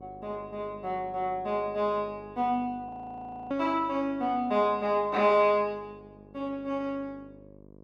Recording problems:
hum; 50 Hz, harmonics up to 1.1 kHz, SNR 22 dB
audio freezing; at 3 s for 0.5 s

